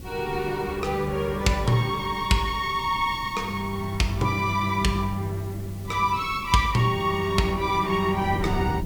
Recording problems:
background hiss; SNR 23 dB
wind on the microphone; below 230 Hz, SNR 14 dB

